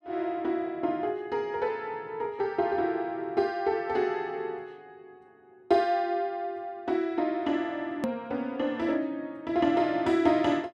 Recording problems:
hard cut with a click; at 8 s

